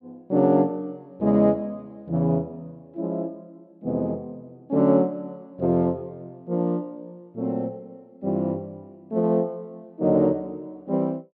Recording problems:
none

